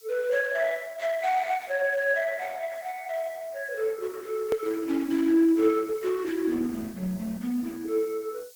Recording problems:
codec artefacts; Opus, log-spectral distance 3 dB, nothing above 19.5 kHz
background hiss; SNR 23 dB
hard cut with a click; at 4.5 s

